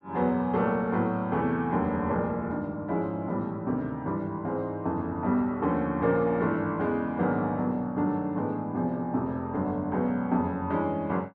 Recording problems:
none

